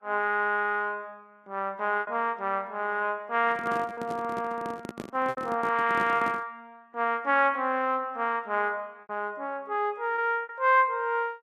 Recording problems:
lossy compression; Vorbis, log-spectral distance 2 dB
lost packets; 4% of the sound replaced, filled with repeated pitch periods
handling noise; from 3.5 to 6.5 s; peak -5 dB vs average level

